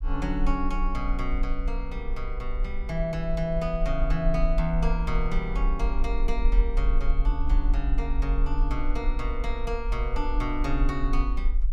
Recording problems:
low-frequency rumble; below 42 Hz, SNR -2 dB

